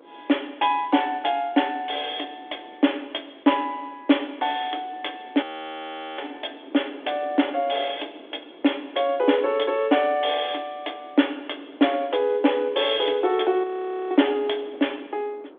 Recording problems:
phone line; 240 Hz to 3.6 kHz, G.726
wind on the microphone; below 620 Hz, SNR 22 dB
audio freezing; at 5.5 s for 1 s and at 14 s

